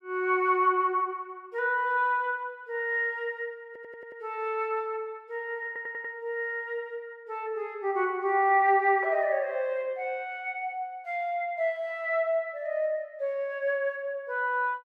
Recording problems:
stutter; at 3.5 s and at 5.5 s

